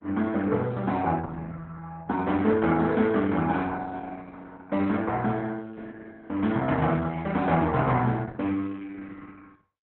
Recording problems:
lossy codec; Opus, log-spectral distance 3 dB, nothing above 3.7 kHz

